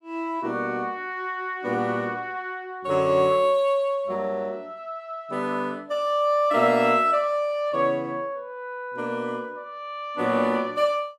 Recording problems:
none

